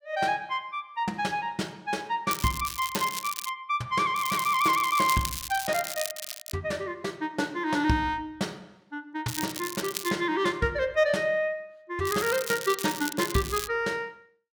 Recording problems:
crackling; 4 times, first at 2.5 s; loose cable, SNR 7 dB

